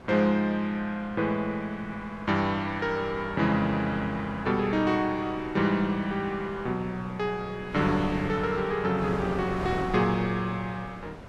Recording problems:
wind noise; below 900 Hz, SNR 13 dB

